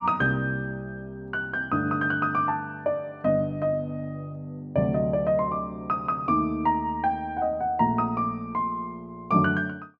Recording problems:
none

